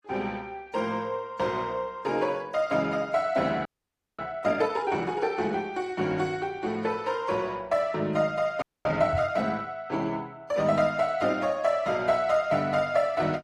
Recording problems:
codec artefacts; Opus, then AAC, log-spectral distance 2 dB, nothing above 15.1 kHz
frozen audio; at 3.5 s for 0.5 s and at 8.5 s
microphone bump; at 9 s; peak 0 dB vs average level

